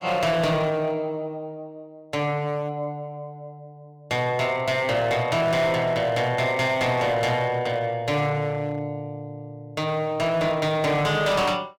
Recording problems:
distortion; hard clipping, signal-to-distortion ratio 11 dB

